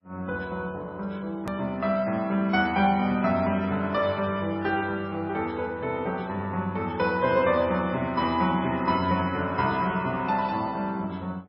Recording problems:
lossy compression; MP3, log-spectral distance 2 dB, nothing above 13.1 kHz
hard cut with a click; at 1.5 s

